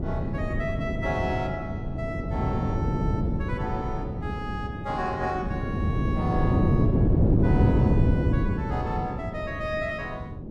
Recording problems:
wind on the microphone; below 260 Hz, SNR -6 dB

